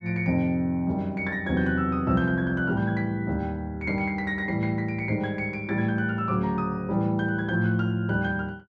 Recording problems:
none

